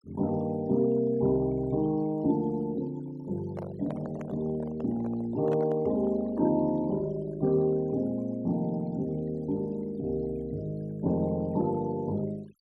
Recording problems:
denoising artefacts; signal-to-artefact ratio 25 dB
handling noise; from 3.5 to 6.5 s; peak -6 dB vs average level

